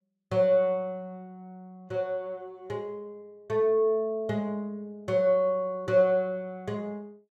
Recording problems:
none

